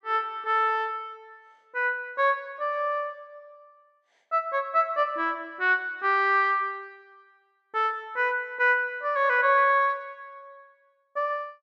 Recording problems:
none

